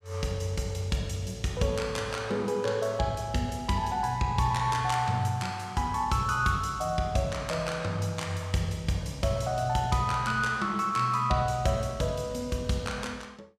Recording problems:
none

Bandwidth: 15 kHz